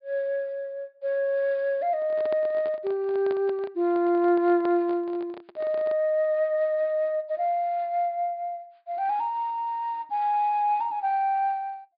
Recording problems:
treble missing; nothing above 4.9 kHz
microphone handling noise; from 2 to 6 s; peak -8 dB vs average level

